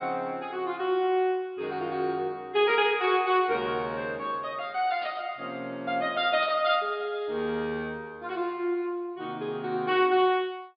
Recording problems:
low-pass filter; nothing above 4.9 kHz
static burst; at 5 s and at 6.5 s; peak -12 dB vs average level

